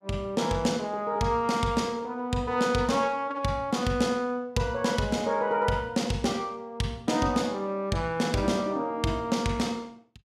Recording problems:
none

